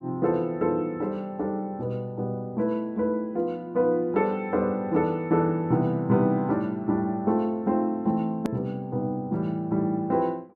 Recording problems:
edit click; at 8.5 s

